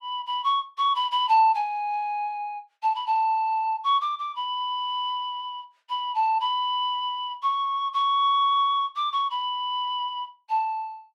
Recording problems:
none

